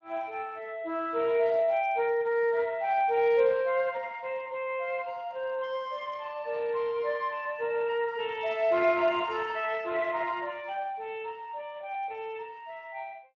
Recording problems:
lossy codec; Speex, log-spectral distance 3 dB

